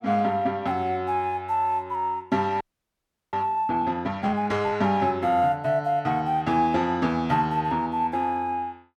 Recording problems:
frozen audio; at 2.5 s for 0.5 s

